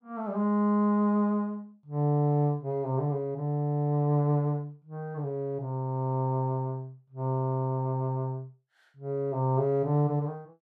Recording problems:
none

